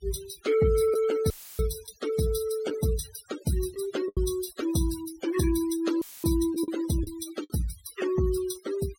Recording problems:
denoising artefacts; signal-to-artefact ratio 13 dB
packet loss; 3% of the sound replaced, filled with the last packet
dropout; at 1.5 s and at 6 s; filled with static

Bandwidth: 16.5 kHz